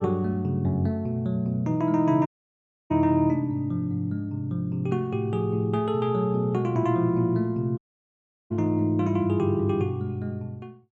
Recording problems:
dropout; at 2.5 s for 0.5 s and at 8 s for 0.5 s

